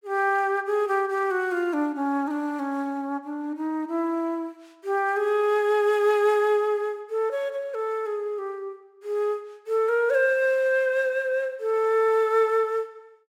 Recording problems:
none

